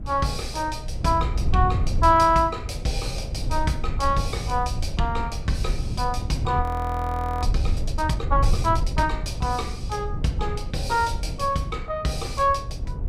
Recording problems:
wind noise; below 96 Hz, SNR 4 dB
audio freezing; at 6.5 s for 1 s

